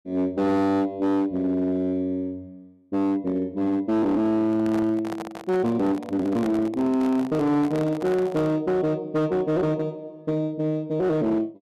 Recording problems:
distorted audio; hard clipping, signal-to-distortion ratio 11 dB
handling noise; from 4.5 to 8.5 s; peak -6 dB vs average level

